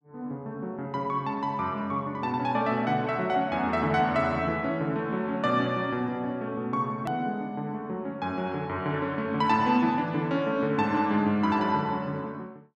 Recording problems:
hard cut with a click; at 7 s

